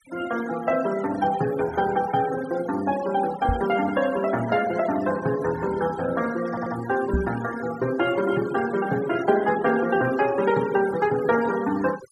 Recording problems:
denoising artefacts; signal-to-artefact ratio 14 dB
knock on the microphone; at 3.5 s and at 7 s; peak +3 dB vs average level
stutter; at 6.5 s

